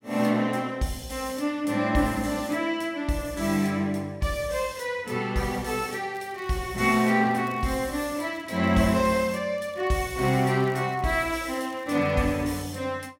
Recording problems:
crackle; from 6 to 9 s and from 9.5 to 12 s; loose cable, SNR 29 dB

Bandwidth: 16.5 kHz